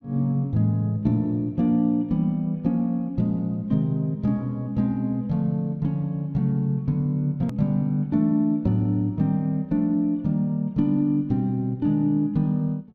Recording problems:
hard cut with a click; at 7.5 s

